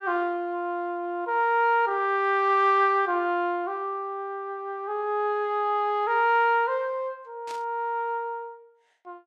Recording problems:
static burst; at 7.5 s; peak -13 dB vs average level

